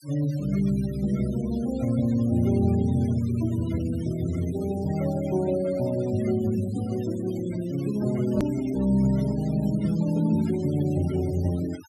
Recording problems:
denoising artefacts; signal-to-artefact ratio 20 dB
edit click; at 8.5 s

